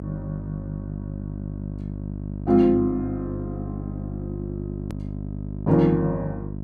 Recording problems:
mains hum; 50 Hz, harmonics up to 700 Hz, SNR 9 dB
hard cut with a click; at 5 s

